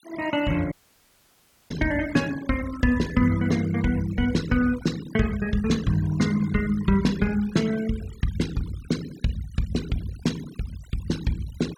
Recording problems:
denoising artefacts; signal-to-artefact ratio 17 dB
dropout; at 0.5 s for 1 s

